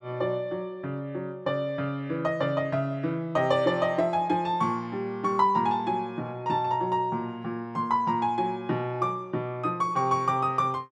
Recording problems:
none

